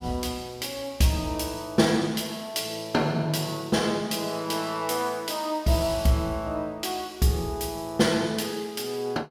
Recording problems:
none

